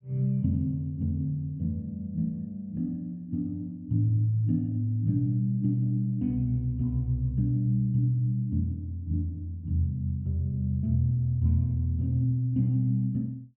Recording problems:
none

